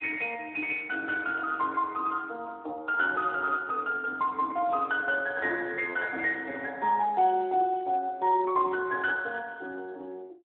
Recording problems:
telephone audio; 280 Hz to 3.3 kHz, Speex

